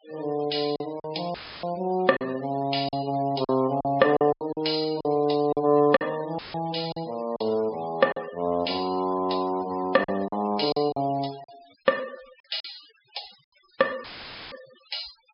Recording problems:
low-pass filter; nothing above 5.5 kHz
noise reduction artefacts; signal-to-artefact ratio 20 dB
packet loss; 7% of the sound replaced, filled with silence
audio cutting out; at 1.5 s, at 6.5 s and at 14 s; filled with static

